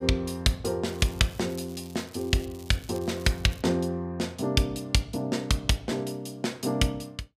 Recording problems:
crackle; from 1 to 3.5 s; loose cable, SNR 21 dB

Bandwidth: 15 kHz